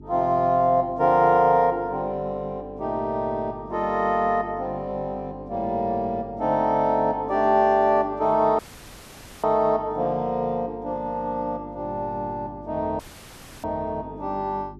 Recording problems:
electrical hum; 50 Hz, harmonics up to 400 Hz, SNR 20 dB
audio cutting out; at 8.5 s for 1 s and at 13 s for 0.5 s

